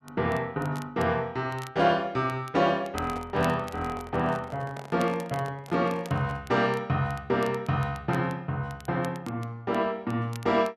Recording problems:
crackling; vinyl, SNR 22 dB
handling noise; from 3 to 6.5 s; peak -9 dB vs average level

